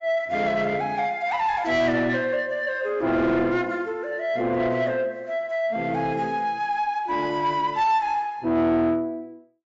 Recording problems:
lossy compression; AAC, log-spectral distance 2 dB
distortion; soft clipping, signal-to-distortion ratio 12 dB

